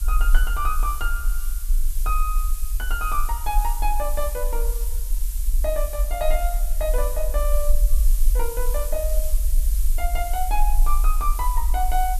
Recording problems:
background hiss; slope +3 dB per octave, SNR 7 dB
low-frequency rumble; below 42 Hz, strongest tone 22 Hz, SNR -3 dB

